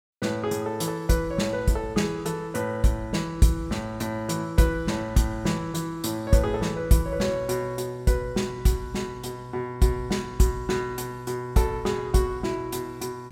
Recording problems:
none

